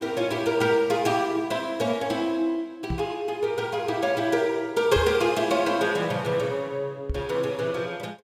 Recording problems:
knock on the microphone; at 3 s, at 5 s and at 7 s; peak -1 dB vs average level

